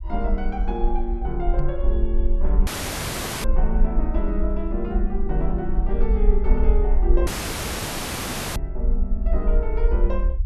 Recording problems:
rumble; below 48 Hz, SNR -4 dB
microphone bump; at 1.5 s; peak +4 dB vs average level
dropout; at 2.5 s for 1 s and at 7.5 s for 1.5 s

